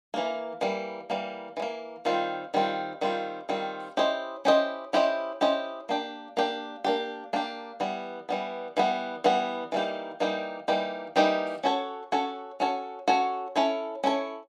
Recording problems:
none

